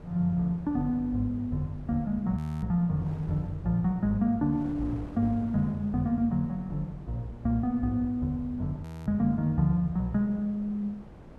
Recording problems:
wind noise; below 440 Hz, SNR 19 dB
frozen audio; at 2.5 s and at 9 s

